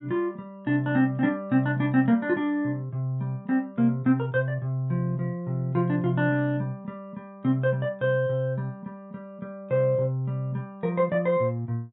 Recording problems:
low-pass filter; nothing above 4 kHz

